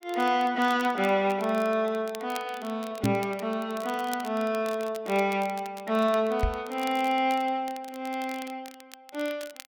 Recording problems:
crackling; vinyl, SNR 19 dB
knock on the microphone; at 3 s and at 6.5 s; peak +5 dB vs average level

